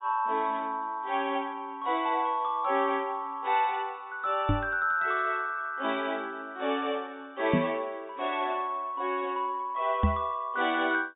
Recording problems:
low-pass filter; nothing above 4 kHz
knock on the microphone; at 4.5 s, at 7.5 s and at 10 s; peak +8 dB vs average level

